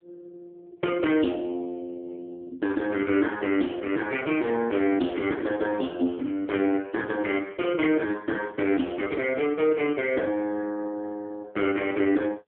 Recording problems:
phone line; 240 Hz to 3.5 kHz, AMR-NB

